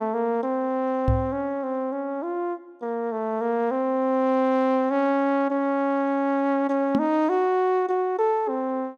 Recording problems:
knock on the microphone; at 1 s and at 7 s; peak +4 dB vs average level

